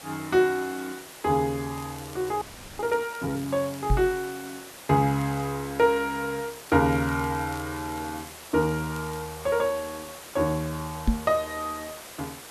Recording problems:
hiss; slope -2 dB per octave, SNR 15 dB
crackling; from 2 to 4 s, at 5 s and from 6.5 to 9.5 s; loose cable, SNR 24 dB
audio freezing; at 2.5 s
knock on the microphone; at 4 s and at 11 s; peak +7 dB vs average level

